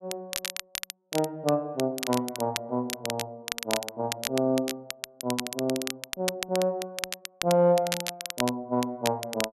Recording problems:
crackle; vinyl, SNR 6 dB

